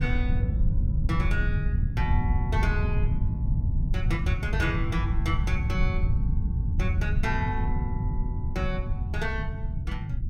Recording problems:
low-frequency rumble; below 110 Hz, SNR -6 dB

